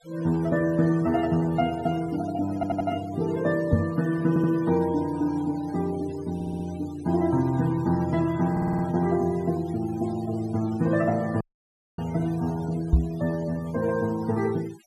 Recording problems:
denoising artefacts; signal-to-artefact ratio 20 dB
stutter; 4 times, first at 2.5 s
knock on the microphone; at 3.5 s and at 13 s; peak +9 dB vs average level
dropout; at 11 s for 0.5 s

